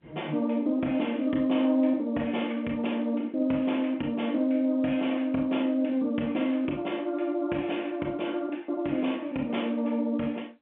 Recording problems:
phone line; 190 Hz to 3.3 kHz, G.711

